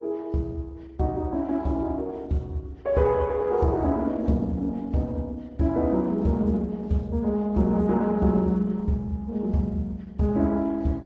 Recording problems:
codec artefacts; AAC, then Opus, log-spectral distance 2 dB, nothing above 7.6 kHz

